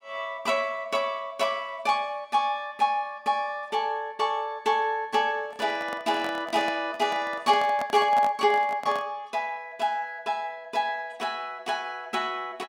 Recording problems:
microphone handling noise; from 5.5 to 9 s; peak -3 dB vs average level

